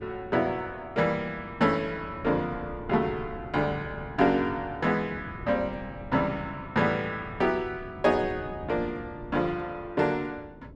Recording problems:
wind on the microphone; below 270 Hz, SNR 16 dB

